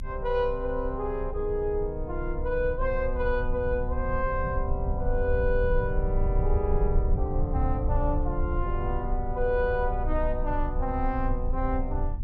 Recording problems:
rumble; below 64 Hz, strongest tone 26 Hz, SNR 2 dB

